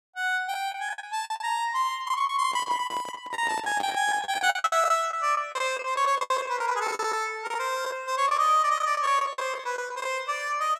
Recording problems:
lost packets; 14% of the sound replaced, filled with the last packet
microphone handling noise; from 2.5 to 4.5 s; peak -7 dB vs average level

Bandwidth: 15.5 kHz